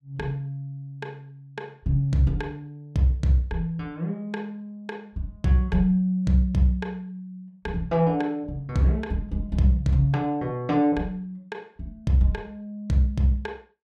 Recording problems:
none

